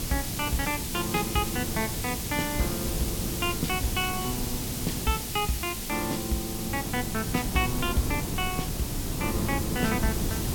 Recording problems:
hiss; SNR 3 dB
wind noise; below 270 Hz, SNR 4 dB

